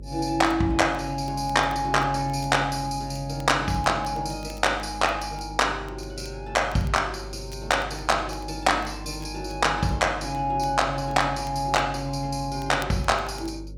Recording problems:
electrical hum; 50 Hz, harmonics up to 550 Hz, SNR 15 dB
crackle; vinyl, SNR 27 dB

